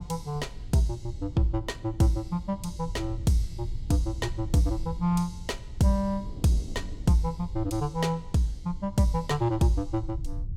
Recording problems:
low-frequency rumble; below 84 Hz, SNR 12 dB
wind noise; below 330 Hz, SNR 23 dB

